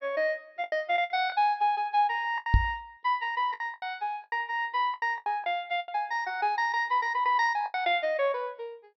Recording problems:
treble missing; nothing above 5.6 kHz
lost packets; 10% of the sound replaced, filled with the last packet
microphone bump; at 2.5 s; peak +9 dB vs average level

